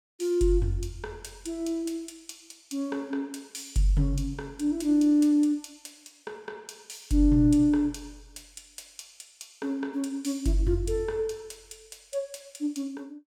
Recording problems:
none

